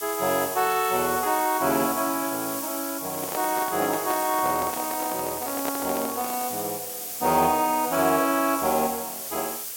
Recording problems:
background hiss; SNR 5 dB
handling noise; from 3 to 6.5 s; peak -2 dB vs average level

